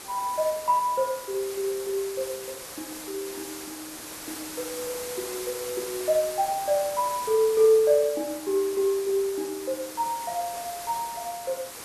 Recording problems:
hiss; slope -2 dB per octave, SNR 10 dB

